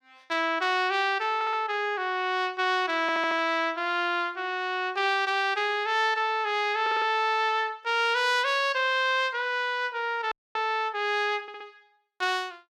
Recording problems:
audio stuttering; 4 times, first at 1.5 s
frozen audio; at 10 s

